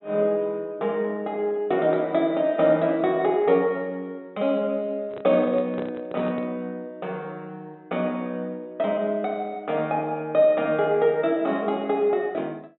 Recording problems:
treble cut off; nothing above 3.9 kHz
handling noise; from 5 to 6.5 s; peak -6 dB vs average level

